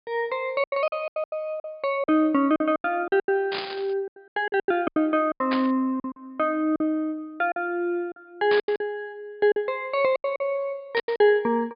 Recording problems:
treble missing; nothing above 5 kHz
lost packets; 14% of the sound replaced, filled with silence
burst of static; 4 times, first at 3.5 s; peak -1 dB vs average level

